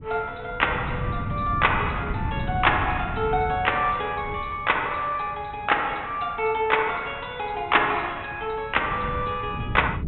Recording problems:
treble cut off; nothing above 3.8 kHz
wind on the microphone; below 180 Hz, SNR 9 dB

